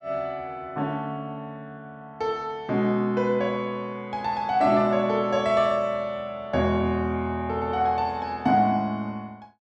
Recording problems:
none

